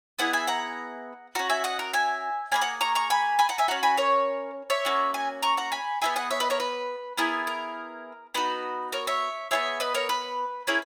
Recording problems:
none

